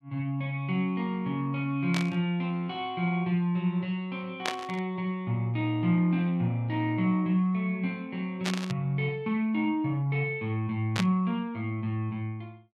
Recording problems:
burst of static; 4 times, first at 2 s; peak +3 dB vs average level

